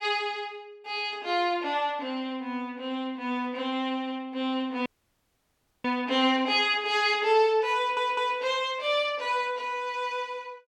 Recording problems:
audio cutting out; at 5 s for 1 s
stutter; at 8 s

